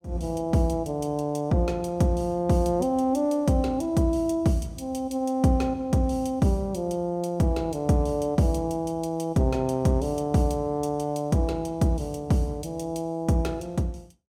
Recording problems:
none

